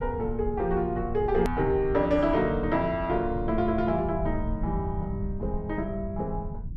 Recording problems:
rumble; below 98 Hz, SNR 9 dB
edit click; at 1.5 s

